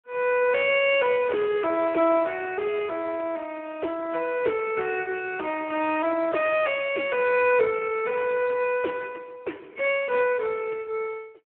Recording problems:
telephone audio; 280 Hz to 3.1 kHz, Speex

